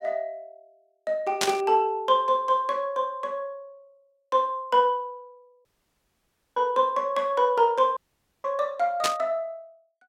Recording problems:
static burst; at 1.5 s and at 9 s; peak +5 dB vs average level
audio cutting out; at 5.5 s for 1 s and at 8 s

